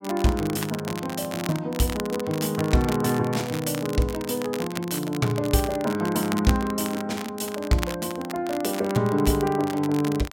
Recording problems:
crackle; vinyl, SNR 12 dB

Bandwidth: 16.5 kHz